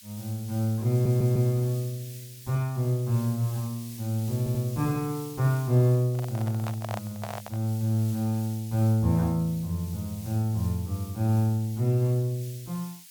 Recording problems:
background hiss; SNR 18 dB
audio stuttering; at 1 s and at 4.5 s
microphone handling noise; from 6 to 7.5 s; peak -4 dB vs average level

